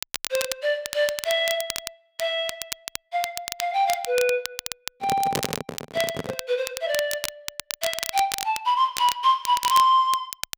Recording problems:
crackling; vinyl, SNR 8 dB
microphone handling noise; from 5 to 6.5 s; peak 0 dB vs average level

